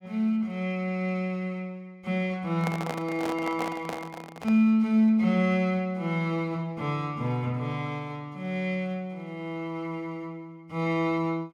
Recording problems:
handling noise; from 2.5 to 4.5 s; peak -1 dB vs average level

